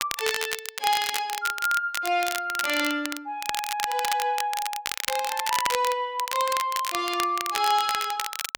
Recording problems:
crackle; vinyl, SNR 5 dB

